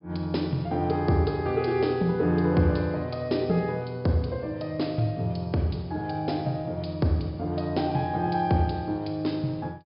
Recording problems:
low-pass filter; nothing above 5.5 kHz

